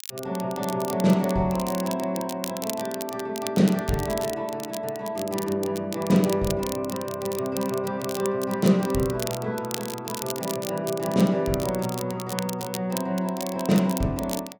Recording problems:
crackling; vinyl, SNR 11 dB

